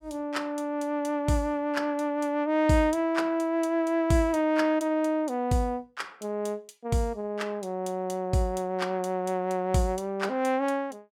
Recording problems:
none

